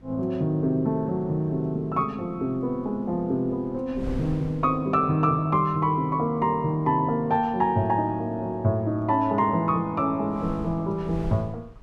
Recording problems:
wind noise; below 200 Hz, SNR 17 dB

